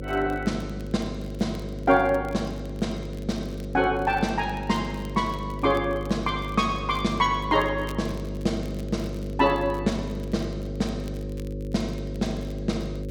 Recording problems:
electrical hum; 50 Hz, harmonics up to 550 Hz, SNR 7 dB
crackle; vinyl, SNR 26 dB

